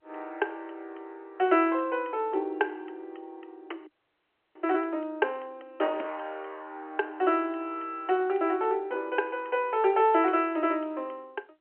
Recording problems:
telephone audio; 260 Hz to 3.2 kHz, G.711
audio freezing; at 4 s for 0.5 s

